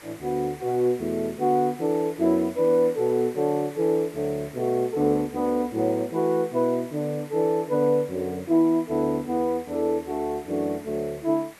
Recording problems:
hiss; SNR 22 dB

